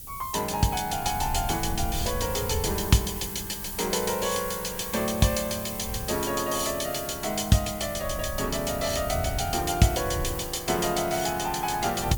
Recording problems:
background hiss; SNR 9 dB
wind noise; below 110 Hz, SNR 12 dB

